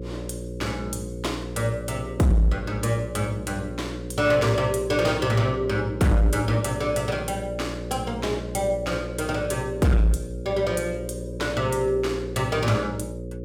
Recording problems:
distorted audio; hard clipping, signal-to-distortion ratio 12 dB
electrical hum; 60 Hz, harmonics up to 540 Hz, SNR 9 dB

